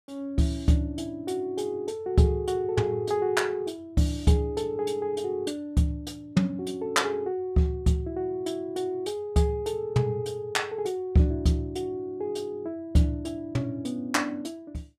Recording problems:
none

